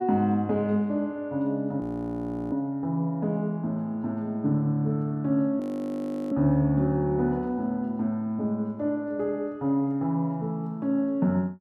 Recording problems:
frozen audio; at 2 s for 0.5 s and at 5.5 s for 0.5 s

